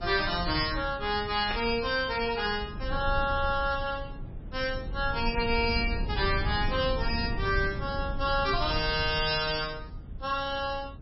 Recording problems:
codec artefacts; MP3, log-spectral distance 6 dB, nothing above 5.5 kHz
rumble; below 100 Hz, SNR 8 dB
static burst; at 1.5 s; peak -1 dB vs average level

